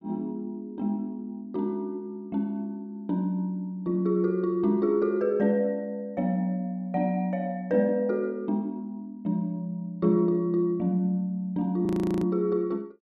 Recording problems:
audio freezing; at 12 s

